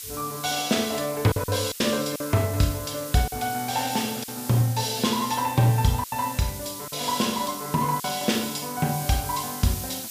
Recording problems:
background hiss; SNR 10 dB
packet loss; 4% of the sound replaced, filled with silence

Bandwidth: 15 kHz